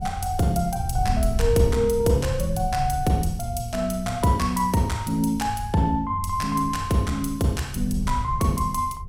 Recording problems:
wind on the microphone; below 92 Hz, SNR 8 dB

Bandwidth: 16.5 kHz